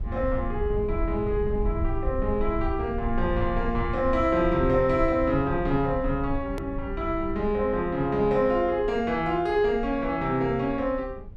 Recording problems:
rumble; below 76 Hz, SNR 9 dB
edit click; at 6.5 s

